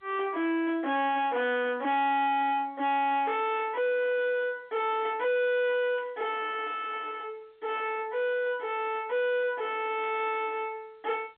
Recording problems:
phone line; 240 Hz to 3.9 kHz, G.711
distortion; soft clipping, signal-to-distortion ratio 5 dB
static burst; 4 times, first at 2 s; peak -17 dB vs average level

